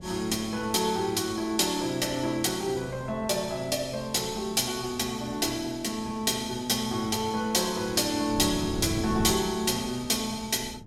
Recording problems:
wind on the microphone; below 240 Hz, SNR 15 dB

